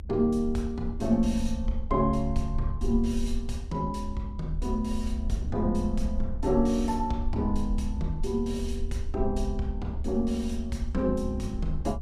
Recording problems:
low-frequency rumble; below 68 Hz, SNR 6 dB
wind on the microphone; below 220 Hz, SNR 18 dB

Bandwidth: 14.5 kHz